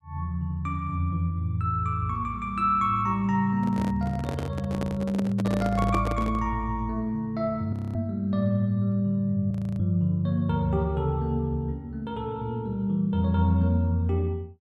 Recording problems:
handling noise; from 3.5 to 6.5 s; peak -1 dB vs average level
audio freezing; at 7.5 s and at 9.5 s

